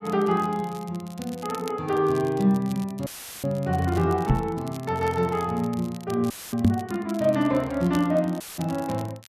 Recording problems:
crackling; vinyl, SNR 21 dB
dropout; at 3 s, at 6.5 s and at 8.5 s; filled with static
microphone bump; at 4.5 s and at 6.5 s; peak +10 dB vs average level

